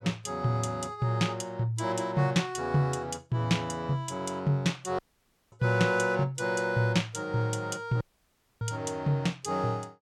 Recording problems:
dropout; at 5 s for 0.5 s and at 8 s for 0.5 s

